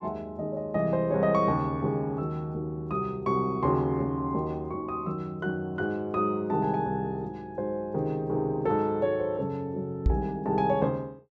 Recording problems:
microphone thump; at 10 s; peak +7 dB vs average level

